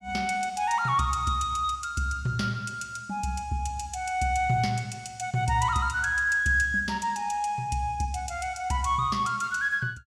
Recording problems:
none

